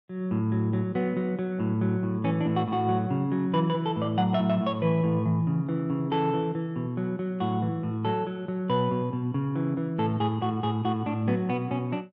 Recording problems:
treble cut off; nothing above 7.8 kHz

